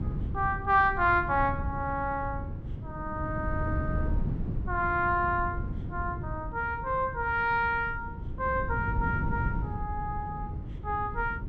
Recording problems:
wind on the microphone; below 150 Hz, SNR 6 dB

